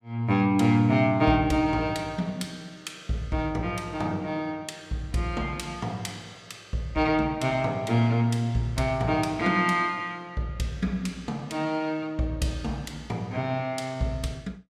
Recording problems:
none

